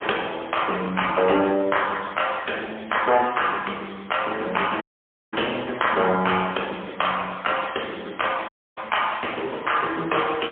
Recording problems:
phone line; 280 Hz to 3.3 kHz, AMR-NB, then MP3
dropout; at 5 s for 0.5 s and at 8.5 s

